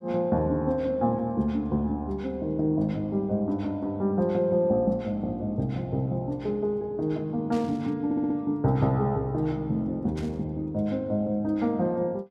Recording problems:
burst of static; at 7.5 s and at 10 s; peak -14 dB vs average level
audio stuttering; at 8 s

